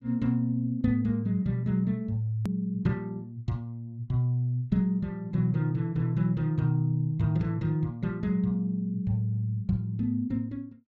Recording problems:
click at an edit; at 2.5 s

